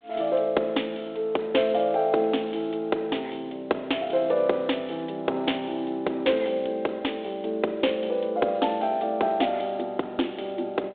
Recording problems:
telephone audio; 280 Hz to 3.7 kHz, G.726

